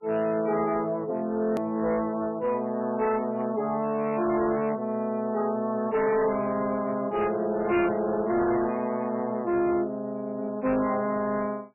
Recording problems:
lossy codec; MP3, log-spectral distance 3 dB, nothing above 2.4 kHz
distorted audio; hard clipping, signal-to-distortion ratio 11 dB
edit click; at 1.5 s

